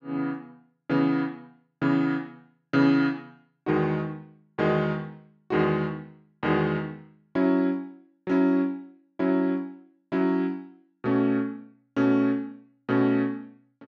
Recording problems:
none

